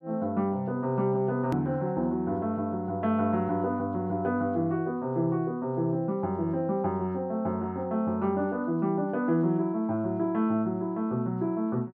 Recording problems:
edit click; at 1.5 s

